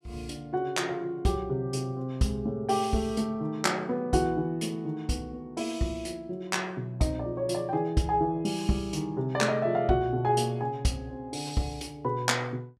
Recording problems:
none

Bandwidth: 15 kHz